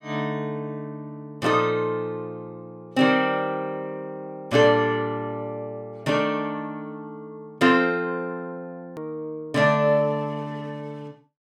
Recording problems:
hard cut with a click; at 9 s

